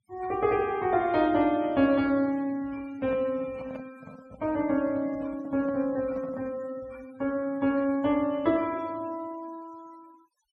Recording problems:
noise reduction artefacts; signal-to-artefact ratio 24 dB
microphone handling noise; from 3 to 6.5 s; peak -9 dB vs average level

